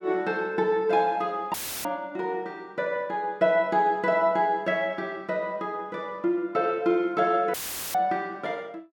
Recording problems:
audio cutting out; at 1.5 s and at 7.5 s; filled with static

